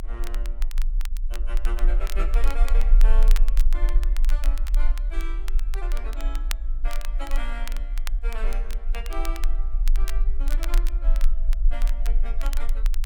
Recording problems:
rumble; below 36 Hz, strongest tone 28 Hz, SNR -13 dB
crackle; vinyl, SNR 3 dB

